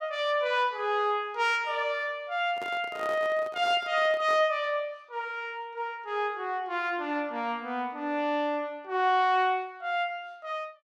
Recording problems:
microphone handling noise; from 2.5 to 4.5 s; peak -9 dB vs average level

